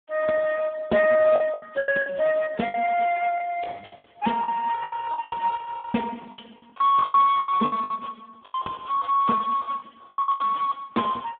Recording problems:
telephone audio; 150 Hz to 2.8 kHz, Speex
lost packets; 14% of the sound replaced, filled with the last packet

